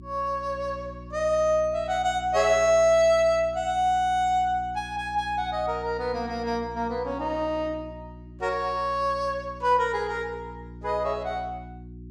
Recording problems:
hum; 60 Hz, harmonics up to 360 Hz, SNR 17 dB

